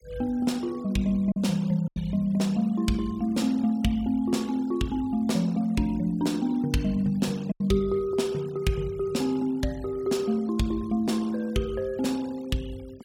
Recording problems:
denoising artefacts; signal-to-artefact ratio 24 dB
lost packets; 1.5% of the sound replaced, filled with silence

